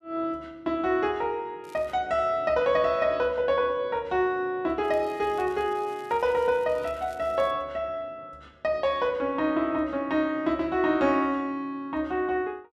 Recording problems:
crackling; at 1.5 s and from 5 to 7.5 s; loose cable, SNR 28 dB

